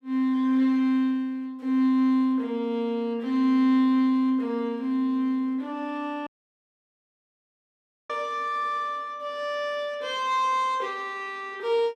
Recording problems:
audio cutting out; at 6.5 s for 2 s

